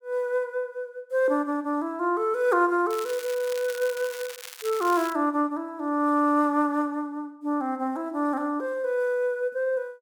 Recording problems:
crackle; from 3 to 5 s; loose cable, SNR 14 dB

